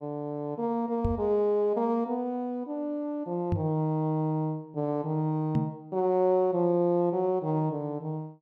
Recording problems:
knock on the microphone; at 1 s, at 3.5 s and at 5.5 s; peak +3 dB vs average level

